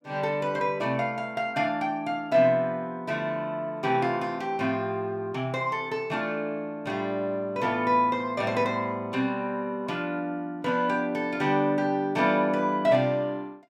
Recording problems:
none

